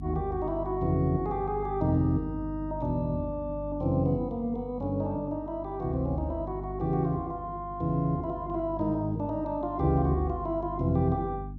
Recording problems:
hum; 50 Hz, harmonics up to 300 Hz, SNR 11 dB

